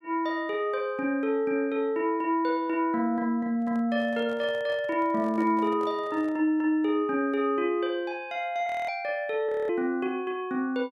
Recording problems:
microphone handling noise; from 3.5 to 6.5 s; peak -10 dB vs average level
audio freezing; at 8.5 s and at 9.5 s

